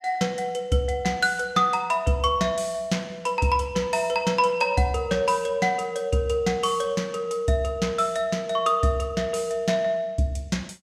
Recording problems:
none

